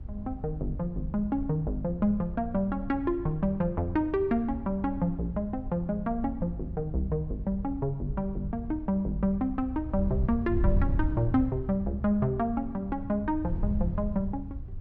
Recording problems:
wind noise; below 92 Hz, SNR 7 dB

